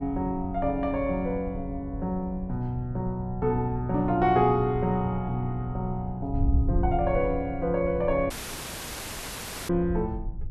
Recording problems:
wind on the microphone; below 88 Hz, SNR 8 dB
dropout; at 8.5 s for 1.5 s

